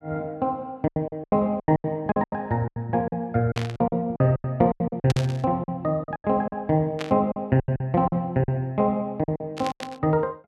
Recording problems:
lost packets; 16% of the sound replaced, filled with silence
static burst; 4 times, first at 3.5 s; peak -2 dB vs average level

